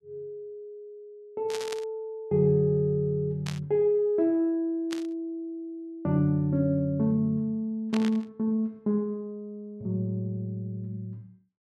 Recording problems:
burst of static; 4 times, first at 1.5 s; peak -5 dB vs average level

